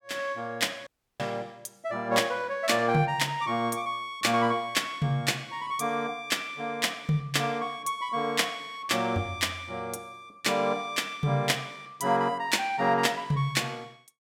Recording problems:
audio cutting out; at 1 s

